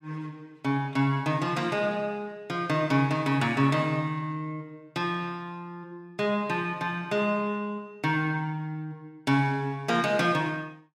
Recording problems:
none

